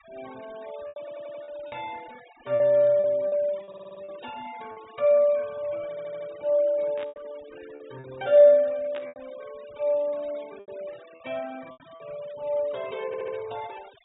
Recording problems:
treble cut off; nothing above 4 kHz
noise reduction artefacts; signal-to-artefact ratio 26 dB
packet loss; 7% of the sound replaced, filled with repeated pitch periods
audio stuttering; 4 times, first at 1 s
static burst; at 7 s and at 9 s; peak -13 dB vs average level

